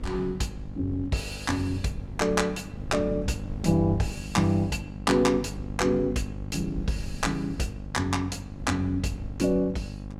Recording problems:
mains hum; 50 Hz, harmonics up to 850 Hz, SNR 12 dB
wind noise; below 120 Hz, SNR 15 dB

